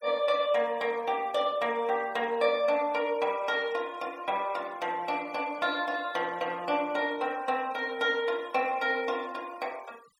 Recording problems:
denoising artefacts; signal-to-artefact ratio 23 dB

